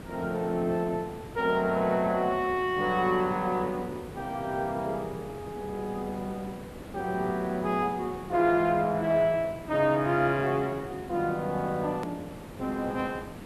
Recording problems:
hiss; slope -7 dB per octave, SNR 15 dB
hard cut with a click; at 12 s

